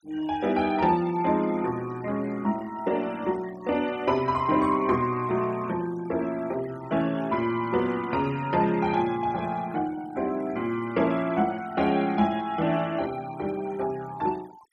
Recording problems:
denoising artefacts; signal-to-artefact ratio 20 dB

